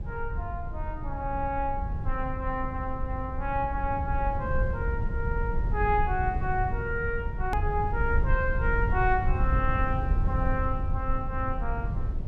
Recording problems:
low-frequency rumble; below 90 Hz, SNR 0 dB
click at an edit; at 7.5 s

